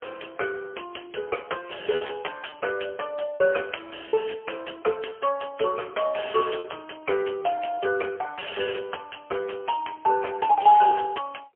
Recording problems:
telephone audio; 340 Hz to 3.2 kHz, AMR-NB, then MP3
packet loss; 4% of the sound replaced, filled with repeated pitch periods

